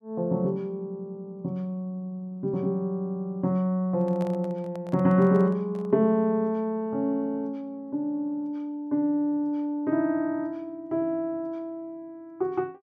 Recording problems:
microphone handling noise; from 4 to 6 s; peak -10 dB vs average level

